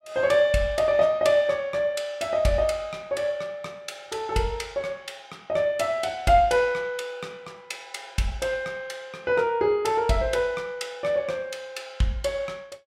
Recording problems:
none

